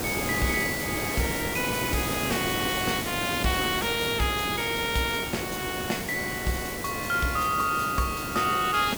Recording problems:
background hiss; SNR 4 dB

